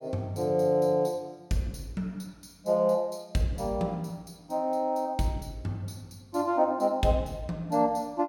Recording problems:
none

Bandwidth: 17.5 kHz